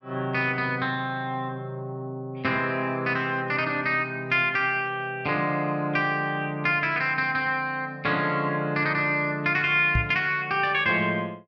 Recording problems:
knock on the microphone; at 10 s; peak +3 dB vs average level

